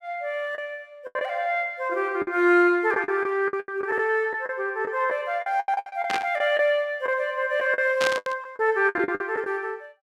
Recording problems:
lost packets; 12% of the sound replaced, filled with the last packet
burst of static; at 6 s and at 8 s; peak +1 dB vs average level

